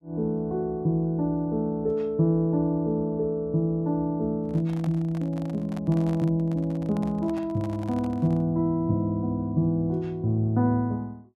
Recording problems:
microphone handling noise; from 4.5 to 8.5 s; peak -10 dB vs average level

